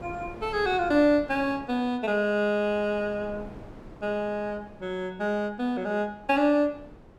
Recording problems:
wind on the microphone; below 530 Hz, SNR 20 dB

